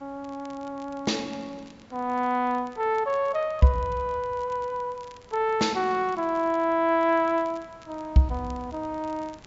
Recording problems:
treble cut off; nothing above 8 kHz
background hiss; slope -5 dB per octave, SNR 28 dB
crackle; vinyl, SNR 29 dB

